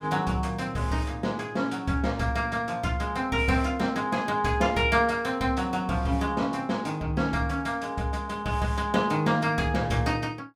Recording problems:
none

